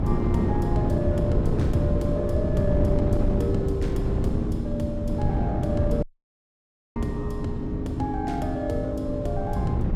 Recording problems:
wind on the microphone; below 220 Hz, SNR -3 dB
dropout; at 6 s for 1 s

